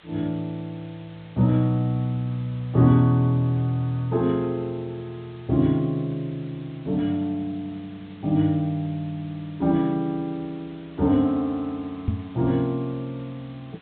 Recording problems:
treble missing; nothing above 4 kHz
background hiss; SNR 27 dB
knock on the microphone; at 12 s; peak +4 dB vs average level

